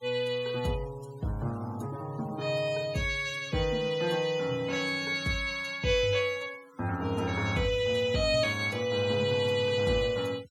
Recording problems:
noise reduction artefacts; signal-to-artefact ratio 22 dB

